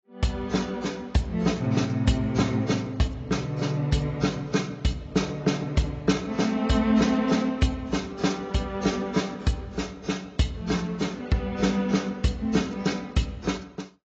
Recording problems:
lossy compression; AAC, log-spectral distance 3 dB, nothing above 7.3 kHz

